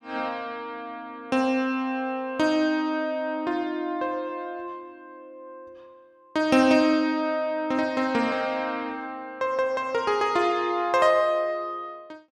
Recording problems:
none

